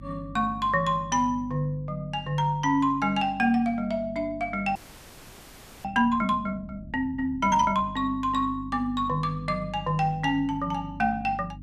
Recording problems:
electrical hum; 50 Hz, harmonics up to 300 Hz, SNR 17 dB
frozen audio; at 5 s for 1 s

